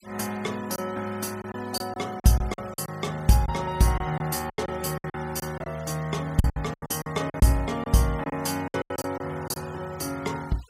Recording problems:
noise reduction artefacts; signal-to-artefact ratio 20 dB
packet loss; 11% of the sound replaced, filled with silence

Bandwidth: 15.5 kHz